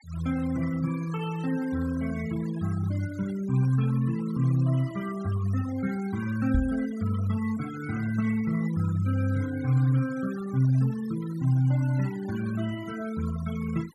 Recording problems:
denoising artefacts; signal-to-artefact ratio 18 dB
knock on the microphone; at 6.5 s; peak +5 dB vs average level

